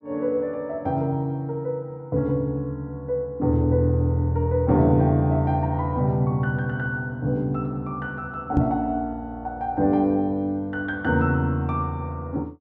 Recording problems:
microphone thump; at 8.5 s; peak +5 dB vs average level

